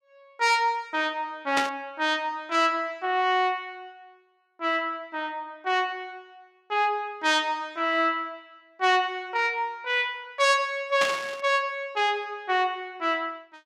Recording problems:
static burst; at 1.5 s and at 11 s; peak +3 dB vs average level

